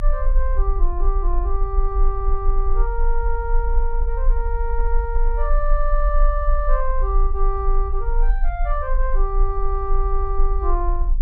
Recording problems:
rumble; below 38 Hz, strongest tone 24 Hz, SNR -4 dB

